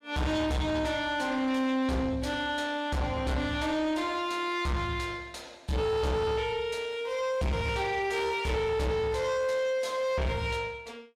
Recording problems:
distortion; soft clipping, signal-to-distortion ratio 8 dB

